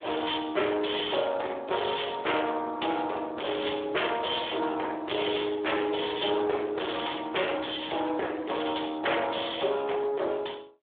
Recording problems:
phone line; 300 Hz to 3.6 kHz, Speex
distortion; soft clipping, signal-to-distortion ratio 6 dB

